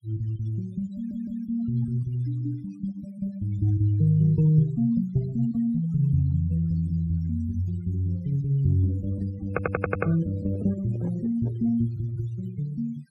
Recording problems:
noise reduction artefacts; signal-to-artefact ratio 22 dB
stutter; at 1 s and at 9.5 s
microphone handling noise; from 10 to 12 s; peak -10 dB vs average level

